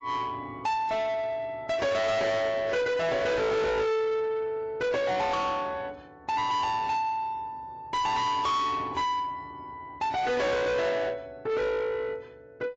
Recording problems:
lossy codec; AAC, log-spectral distance 2 dB, nothing above 7.3 kHz
distortion; soft clipping, signal-to-distortion ratio 7 dB

